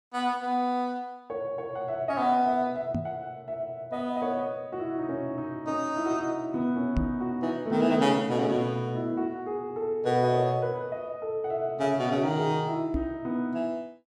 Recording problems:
microphone thump; at 3 s, at 7 s and at 13 s; peak +3 dB vs average level

